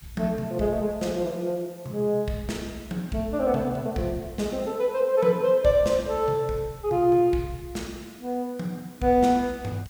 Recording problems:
background hiss; slope 0 dB per octave, SNR 25 dB

